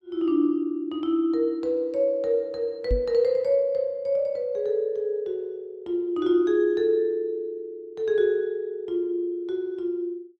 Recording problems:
microphone bump; at 3 s; peak +2 dB vs average level

